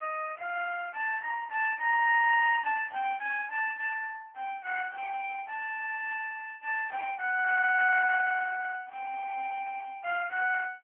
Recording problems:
phone line; 450 Hz to 2.2 kHz, AMR-NB

